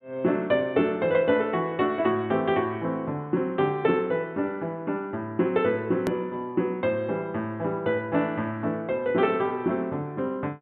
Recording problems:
treble cut off; nothing above 4 kHz
click at an edit; at 6 s

